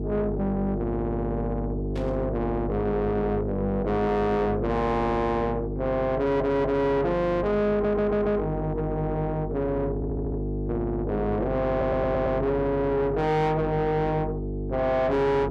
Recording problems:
distorted audio; soft clipping, signal-to-distortion ratio 7 dB
electrical hum; 50 Hz, harmonics up to 750 Hz, SNR 5 dB
burst of static; at 2 s; peak -13 dB vs average level
audio stuttering; 4 times, first at 6 s

